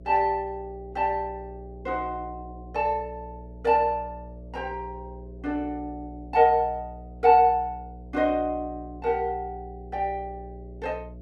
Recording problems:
hum; 60 Hz, harmonics up to 660 Hz, SNR 17 dB

